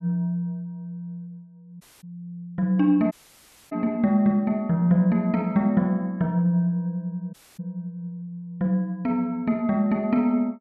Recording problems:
dropout; at 2 s, at 3 s for 0.5 s and at 7.5 s

